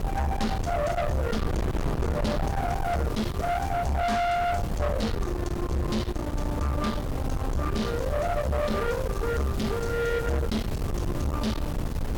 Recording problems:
distorted audio; soft clipping, signal-to-distortion ratio 8 dB
hum; 60 Hz, harmonics up to 480 Hz, SNR 18 dB
hiss; slope +2 dB per octave, SNR 18 dB
wind on the microphone; below 460 Hz, SNR 3 dB

